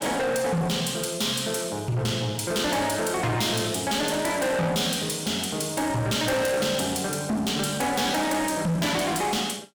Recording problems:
distorted audio; soft clipping, signal-to-distortion ratio 7 dB

